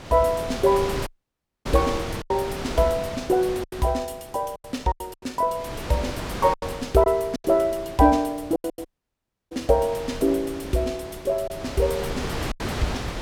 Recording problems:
wind noise; below 1.5 kHz, SNR 9 dB
lost packets; 7% of the sound replaced, filled with silence
dropout; at 1 s for 0.5 s and at 9 s for 0.5 s

